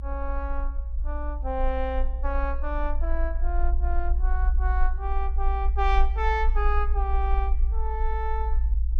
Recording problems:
low-frequency rumble; below 56 Hz, SNR -4 dB

